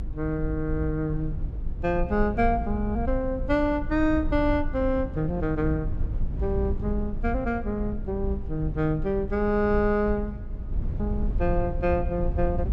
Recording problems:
rumble; below 76 Hz, strongest tone 26 Hz, SNR 5 dB

